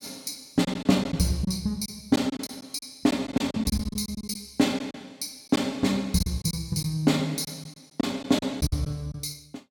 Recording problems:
packet loss; 9% of the sound replaced, filled with silence

